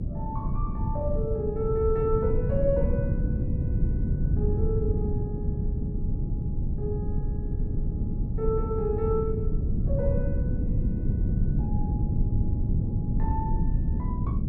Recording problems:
low-frequency rumble; below 150 Hz, SNR -3 dB

